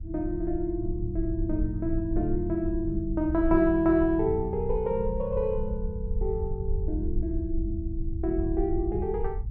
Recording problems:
rumble; below 70 Hz, SNR 6 dB

